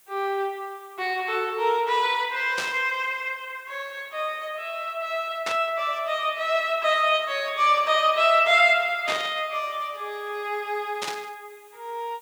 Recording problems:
hiss; slope 0 dB per octave, SNR 30 dB
burst of static; 4 times, first at 2.5 s; peak -2 dB vs average level

